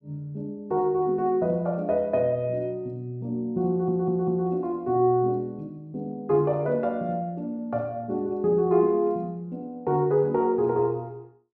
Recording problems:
audio stuttering; at 3.5 s

